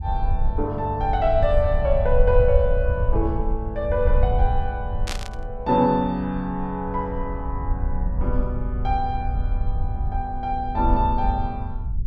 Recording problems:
rumble; below 68 Hz, SNR 2 dB
static burst; at 5 s; peak -1 dB vs average level

